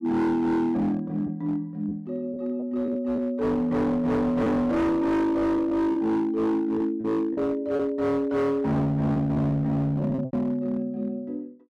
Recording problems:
distorted audio; hard clipping, signal-to-distortion ratio 8 dB
lost packets; 5% of the sound replaced, filled with repeated pitch periods

